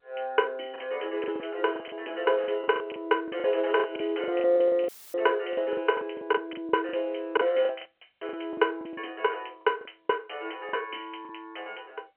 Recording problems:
telephone audio; 280 Hz to 3.1 kHz, G.711
lost packets; 13% of the sound replaced, filled with the last packet
dropout; at 5 s; filled with static

